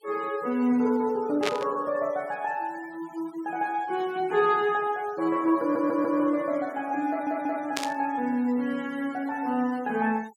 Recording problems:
denoising artefacts; signal-to-artefact ratio 24 dB
static burst; at 1.5 s and at 8 s; peak +3 dB vs average level
audio stuttering; at 5.5 s and at 7 s

